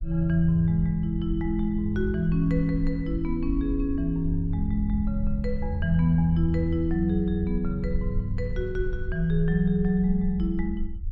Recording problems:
rumble; below 60 Hz, SNR 8 dB

